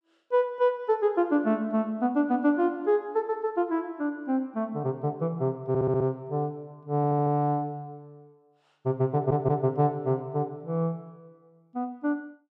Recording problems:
stutter; at 5.5 s, at 7 s and at 9 s

